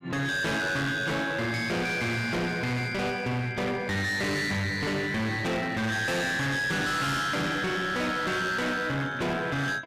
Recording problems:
distortion; hard clipping, signal-to-distortion ratio 6 dB

